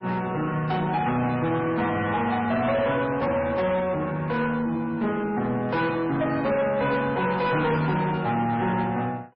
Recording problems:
lossy codec; MP3, log-spectral distance 2 dB, nothing above 5.3 kHz
distortion; soft clipping, signal-to-distortion ratio 11 dB

